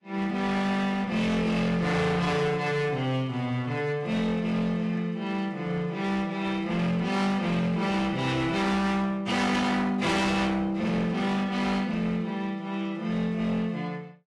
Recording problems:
lossy compression; AAC, log-spectral distance 2 dB, nothing above 11.3 kHz
distortion; hard clipping, uneven, signal-to-distortion ratio 8 dB

